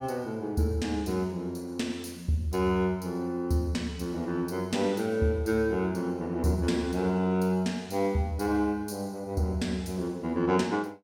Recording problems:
none

